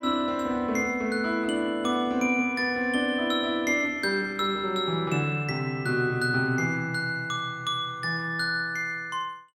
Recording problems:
none

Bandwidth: 18 kHz